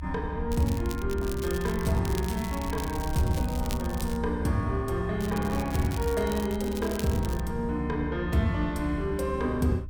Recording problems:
low-frequency rumble; below 76 Hz, strongest tone 68 Hz, SNR 7 dB
crackle; from 0.5 to 4 s and from 5 to 7.5 s; loose cable, SNR 13 dB

